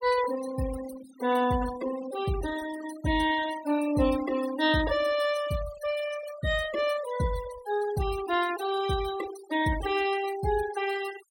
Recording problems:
denoising artefacts; signal-to-artefact ratio 13 dB

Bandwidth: 16 kHz